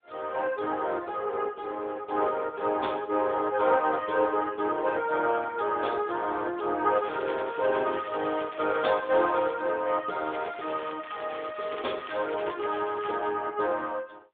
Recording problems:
telephone audio; 280 Hz to 3.6 kHz, AMR-NB
crackle; from 7 to 9.5 s and from 10 to 13 s; loose cable, SNR 17 dB

